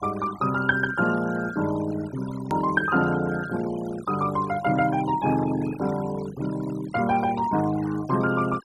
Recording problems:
noise reduction artefacts; signal-to-artefact ratio 15 dB
hard cut with a click; at 2.5 s

